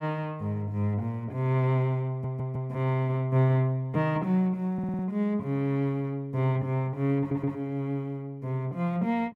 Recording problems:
audio stuttering; at 2 s, at 4.5 s and at 7 s

